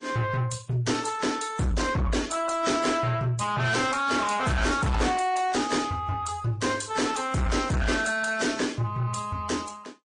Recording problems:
codec artefacts; AAC, then MP3, log-spectral distance 4 dB, nothing above 9 kHz
distorted audio; soft clipping, signal-to-distortion ratio 7 dB

